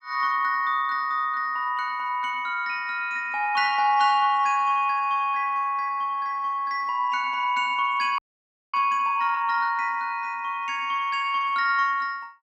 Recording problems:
frozen audio; at 8 s for 0.5 s

